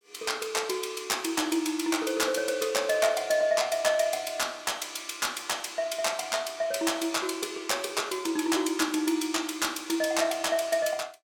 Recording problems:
none

